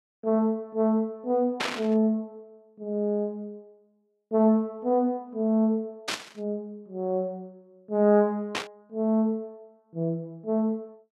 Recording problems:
burst of static; at 1.5 s, at 6 s and at 8.5 s; peak +2 dB vs average level

